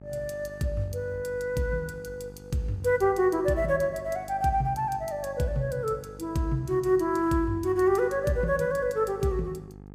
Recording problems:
mains hum; 50 Hz, harmonics up to 1.3 kHz, SNR 19 dB

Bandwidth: 15.5 kHz